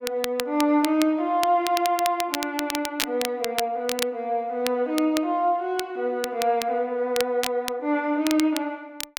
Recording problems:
crackle; vinyl, SNR 8 dB

